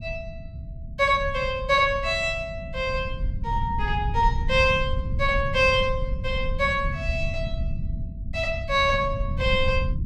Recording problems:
low-frequency rumble; below 100 Hz, SNR 7 dB

